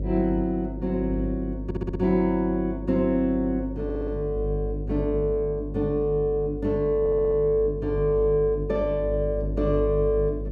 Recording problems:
hum; 50 Hz, harmonics up to 550 Hz, SNR 8 dB
stutter; at 1.5 s, at 4 s and at 7 s

